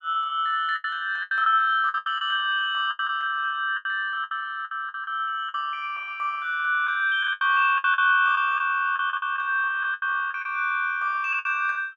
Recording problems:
packet loss; 12% of the sound replaced, filled with the last packet

